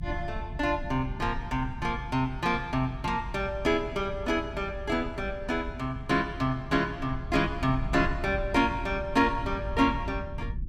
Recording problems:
rumble; below 100 Hz, SNR 10 dB

